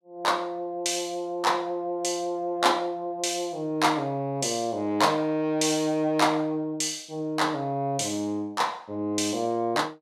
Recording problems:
none

